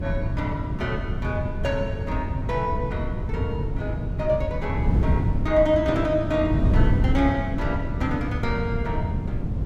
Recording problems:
wind on the microphone; below 150 Hz, SNR 0 dB

